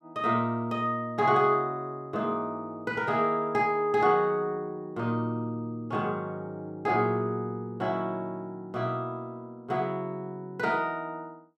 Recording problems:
none

